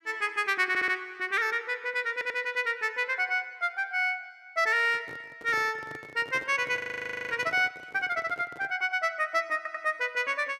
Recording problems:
stutter; at 0.5 s, at 2 s and at 9.5 s
microphone handling noise; from 5 to 9 s; peak -11 dB vs average level
audio freezing; at 7 s for 0.5 s

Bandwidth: 14.5 kHz